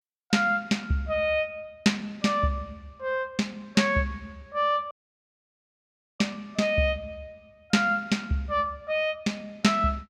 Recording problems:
dropout; at 5 s for 1.5 s

